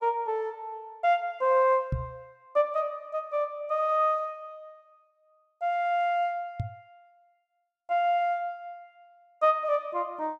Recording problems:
microphone bump; at 2 s and at 6.5 s; peak +2 dB vs average level

